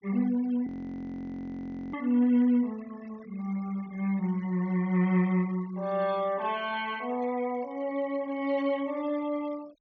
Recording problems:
treble cut off; nothing above 6.4 kHz
noise reduction artefacts; signal-to-artefact ratio 23 dB
audio freezing; at 0.5 s for 1.5 s

